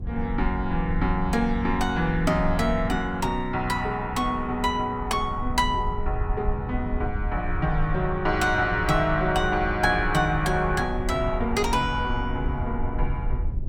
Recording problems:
low-frequency rumble; below 74 Hz, SNR 7 dB

